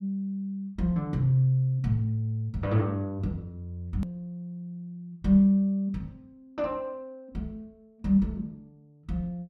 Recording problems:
edit click; at 4 s

